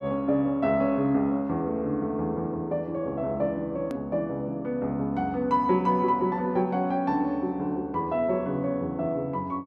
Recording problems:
hard cut with a click; at 4 s

